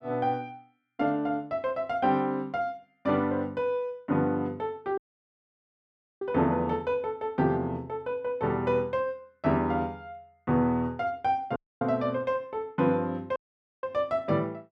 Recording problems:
audio cutting out; at 5 s for 1 s, at 12 s and at 13 s

